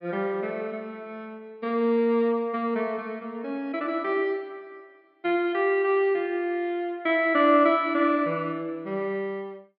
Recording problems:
low-pass filter; nothing above 5.5 kHz

